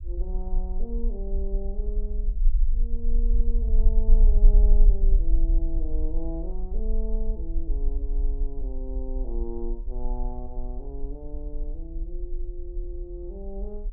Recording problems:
rumble; below 38 Hz, strongest tone 28 Hz, SNR -11 dB

